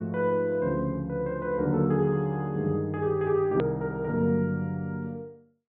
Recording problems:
treble missing; nothing above 4 kHz
click at an edit; at 3.5 s

